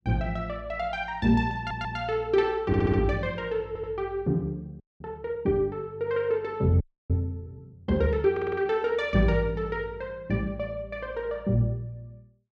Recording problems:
audio stuttering; 4 times, first at 1.5 s
audio freezing; at 5 s and at 7 s

